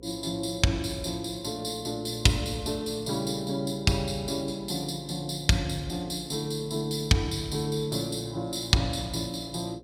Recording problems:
electrical hum; 60 Hz, harmonics up to 540 Hz, SNR 21 dB

